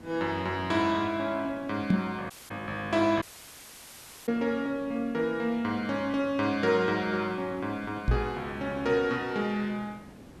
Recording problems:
background hiss; slope -7 dB per octave, SNR 20 dB
knock on the microphone; at 2 s and at 8 s; peak +8 dB vs average level
dropout; at 2.5 s and at 3 s for 1 s

